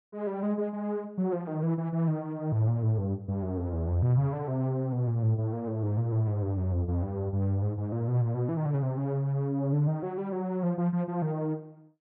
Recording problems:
none

